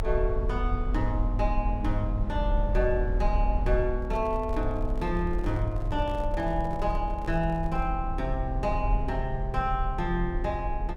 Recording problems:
rumble; below 54 Hz, strongest tone 40 Hz, SNR 2 dB
microphone handling noise; from 4 to 8 s; peak -9 dB vs average level

